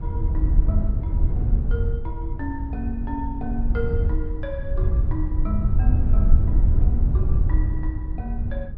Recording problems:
low-pass filter; nothing above 5.5 kHz
wind on the microphone; below 80 Hz, SNR -10 dB

